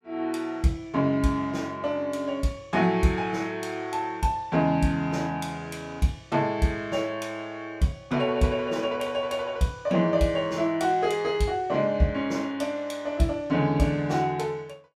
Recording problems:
none

